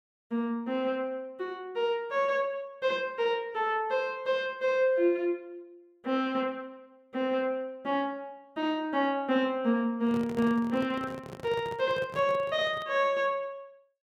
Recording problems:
microphone handling noise; from 10 to 13 s; peak -7 dB vs average level

